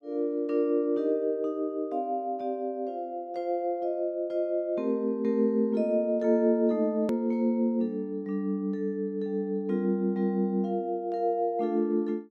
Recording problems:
click at an edit; at 7 s

